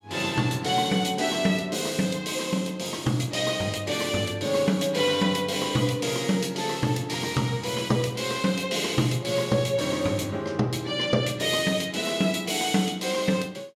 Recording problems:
none

